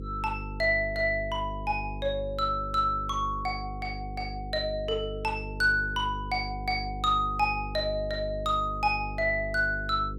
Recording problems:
electrical hum; 50 Hz, harmonics up to 500 Hz, SNR 10 dB

